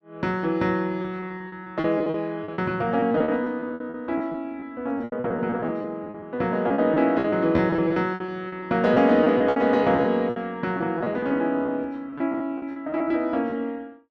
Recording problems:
lost packets; 14% of the sound replaced, filled with repeated pitch periods

